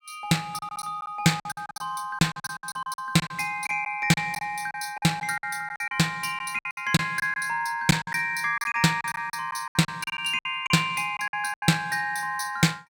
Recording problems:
lost packets; 14% of the sound replaced, filled with silence

